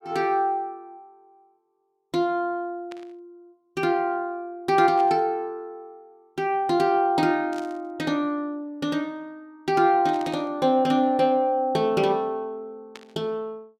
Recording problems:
static burst; 5 times, first at 3 s; peak -13 dB vs average level

